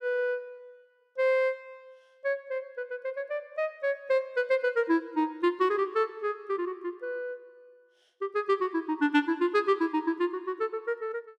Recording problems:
none

